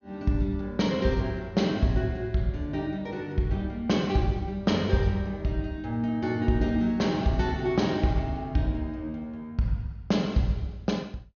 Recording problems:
low-pass filter; nothing above 6.6 kHz

